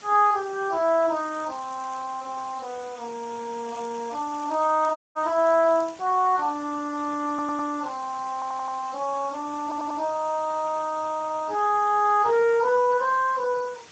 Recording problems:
lossy codec; Speex, log-spectral distance 6 dB
hiss; slope -1 dB per octave, SNR 21 dB
crackling; at 1 s, from 3.5 to 4.5 s and from 5 to 6 s; loose cable, SNR 27 dB
audio cutting out; at 5 s
stutter; at 7.5 s, at 8.5 s and at 9.5 s

